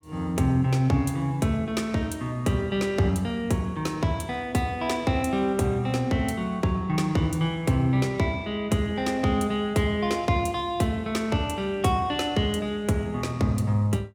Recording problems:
none

